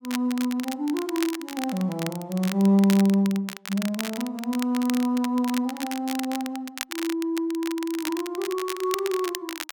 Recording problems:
crackling; vinyl, SNR 11 dB

